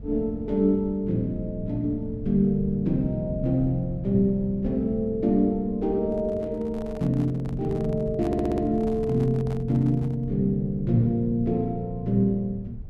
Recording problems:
low-frequency rumble; below 110 Hz, SNR 14 dB
handling noise; from 6 to 10 s; peak -11 dB vs average level
stutter; at 8.5 s

